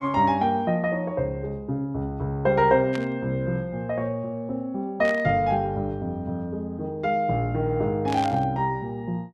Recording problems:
burst of static; at 3 s, at 5 s and at 8 s; peak -5 dB vs average level

